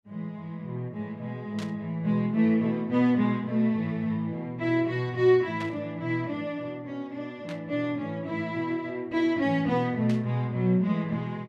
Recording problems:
burst of static; 4 times, first at 1.5 s; peak -9 dB vs average level

